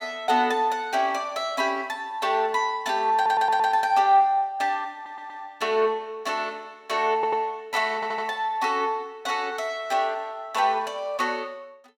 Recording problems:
audio stuttering; 4 times, first at 3 s

